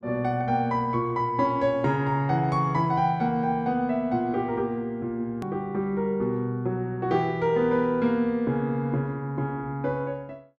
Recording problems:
hard cut with a click; at 5.5 s

